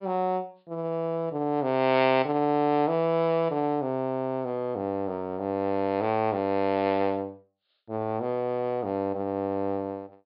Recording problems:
treble cut off; nothing above 5.5 kHz

